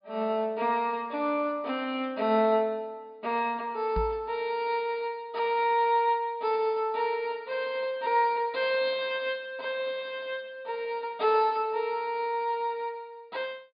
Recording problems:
treble cut off; nothing above 4.9 kHz
microphone thump; at 4 s; peak -1 dB vs average level

